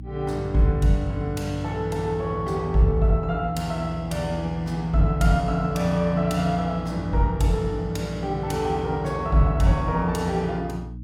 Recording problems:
mains hum; 60 Hz, harmonics up to 300 Hz, SNR 13 dB

